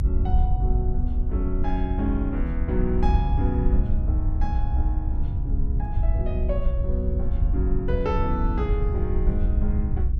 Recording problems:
low-frequency rumble; below 68 Hz, SNR -5 dB

